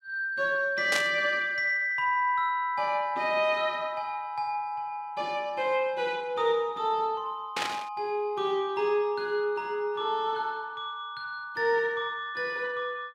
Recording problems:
burst of static; at 1 s and at 7.5 s; peak +3 dB vs average level

